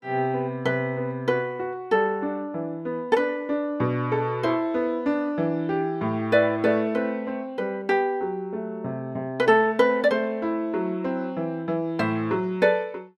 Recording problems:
none

